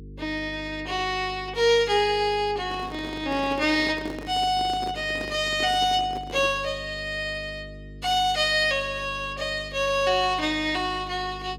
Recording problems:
hum; 50 Hz, harmonics up to 450 Hz, SNR 18 dB
handling noise; from 2.5 to 6.5 s; peak -7 dB vs average level

